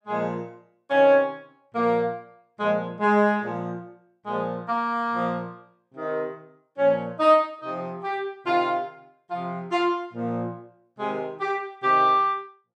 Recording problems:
none

